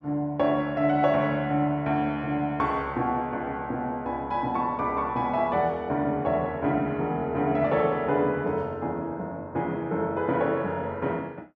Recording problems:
none

